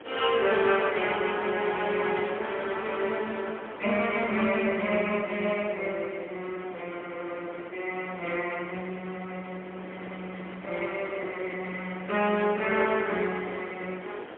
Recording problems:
telephone audio; 240 Hz to 3.3 kHz, AMR-NB, then MP3
wind noise; below 1.5 kHz, SNR 14 dB

